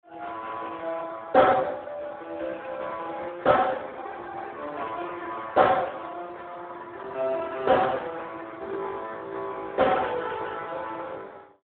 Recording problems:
telephone audio; 280 Hz to 2 kHz, Speex

